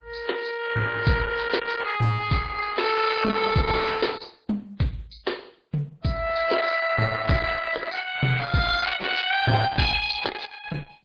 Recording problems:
lossy codec; MP3, then Opus, log-spectral distance 7 dB, nothing above 8 kHz

